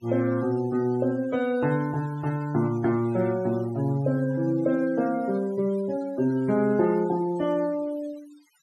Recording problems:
noise reduction artefacts; signal-to-artefact ratio 22 dB

